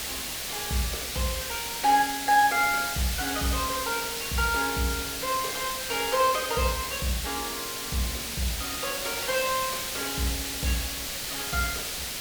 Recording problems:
hiss; SNR 2 dB
crackle; at 4 s, from 6 to 7 s and from 7.5 to 10 s; loose cable, SNR 26 dB

